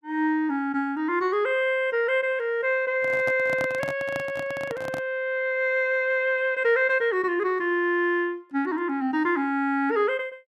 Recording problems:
handling noise; from 3 to 5 s; peak -3 dB vs average level

